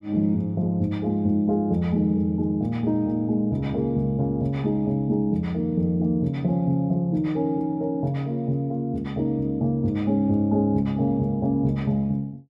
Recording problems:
none

